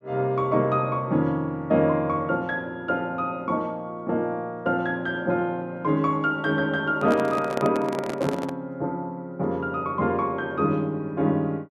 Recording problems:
microphone handling noise; from 7 to 8.5 s; peak -1 dB vs average level

